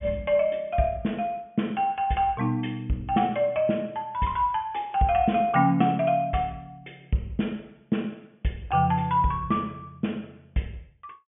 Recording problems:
treble cut off; nothing above 3.4 kHz

